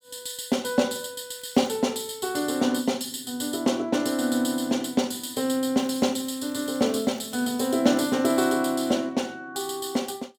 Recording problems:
crackling; at 1.5 s and from 6 to 8.5 s; loose cable, SNR 26 dB

